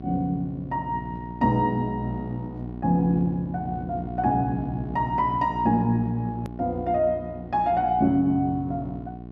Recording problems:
hum; 60 Hz, harmonics up to 780 Hz, SNR 11 dB
edit click; at 6.5 s

